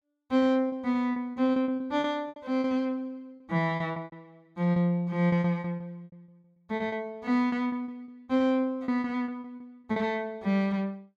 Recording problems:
packet loss; 14% of the sound replaced, filled with repeated pitch periods

